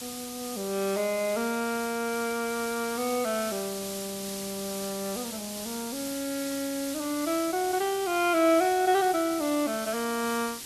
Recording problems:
hiss; SNR 8 dB

